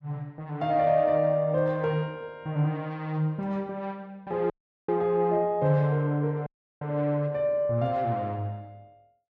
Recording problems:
audio cutting out; at 4.5 s and at 6.5 s

